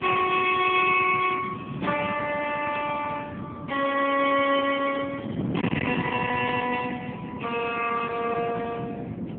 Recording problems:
telephone audio; 190 Hz to 3.4 kHz, AMR-NB
distortion; hard clipping, uneven, signal-to-distortion ratio 10 dB
wind on the microphone; below 370 Hz, SNR 8 dB

